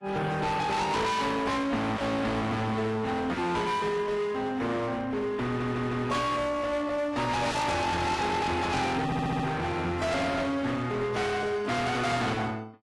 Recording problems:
lossy codec; AAC, then AAC, log-spectral distance 3 dB, nothing above 11.3 kHz
distortion; hard clipping, signal-to-distortion ratio 7 dB
audio stuttering; at 5.5 s and at 9 s

